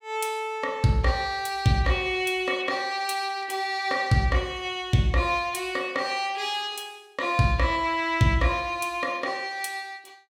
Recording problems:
none

